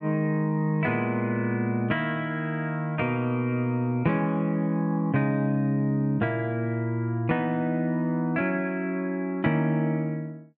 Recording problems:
none

